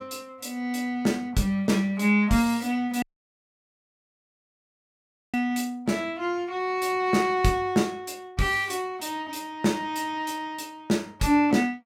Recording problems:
dropout; at 3 s for 2.5 s

